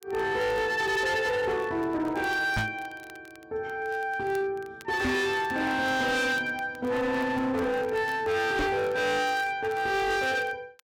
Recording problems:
distorted audio; hard clipping, signal-to-distortion ratio 8 dB
crackling; vinyl, SNR 27 dB
microphone thump; at 2.5 s, at 5 s and at 8.5 s; peak +3 dB vs average level

